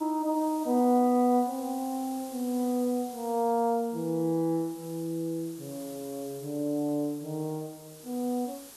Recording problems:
hiss; SNR 18 dB

